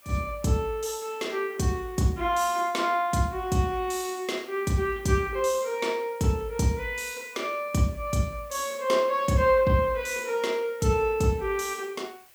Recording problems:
background hiss; slope -1 dB per octave, SNR 26 dB

